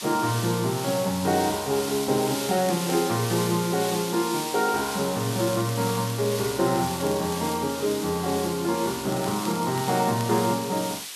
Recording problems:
background hiss; slope +4 dB per octave, SNR 8 dB
crackling; from 2 to 3 s, from 5 to 7.5 s and from 9 to 11 s; loose cable, SNR 17 dB

